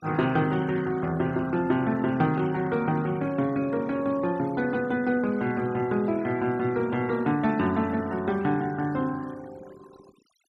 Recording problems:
noise reduction artefacts; signal-to-artefact ratio 21 dB

